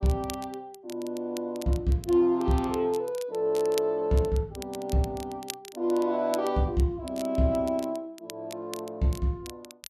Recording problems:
crackle; vinyl, SNR 17 dB

